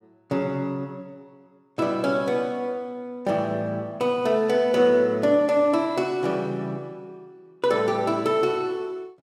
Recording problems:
none

